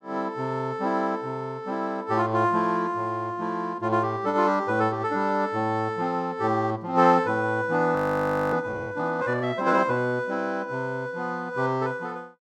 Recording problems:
audio freezing; at 8 s for 0.5 s

